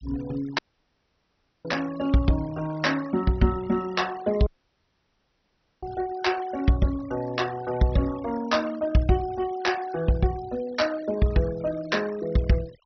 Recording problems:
treble cut off; nothing above 6 kHz
denoising artefacts; signal-to-artefact ratio 19 dB
audio cutting out; at 0.5 s for 1 s and at 4.5 s for 1.5 s

